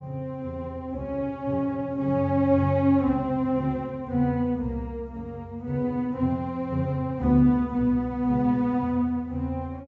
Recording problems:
treble cut off; nothing above 8 kHz

